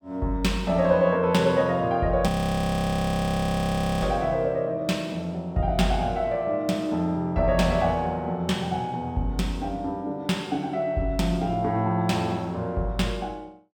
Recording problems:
frozen audio; at 2.5 s for 1.5 s

